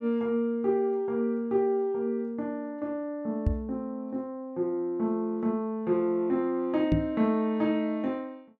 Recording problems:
knock on the microphone; at 3.5 s and at 7 s; peak +8 dB vs average level

